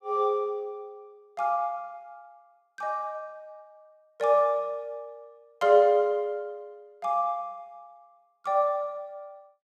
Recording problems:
none

